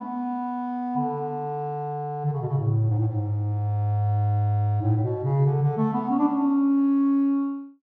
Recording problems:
none

